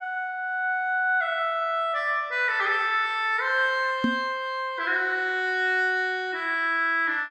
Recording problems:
microphone bump; at 4 s; peak +3 dB vs average level

